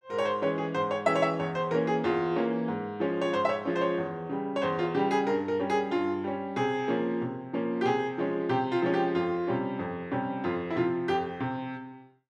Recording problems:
none

